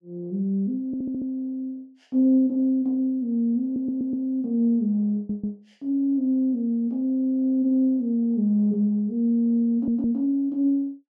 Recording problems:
stutter; 4 times, first at 1 s

